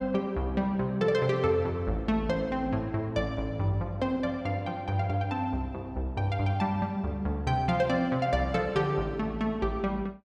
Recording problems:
none

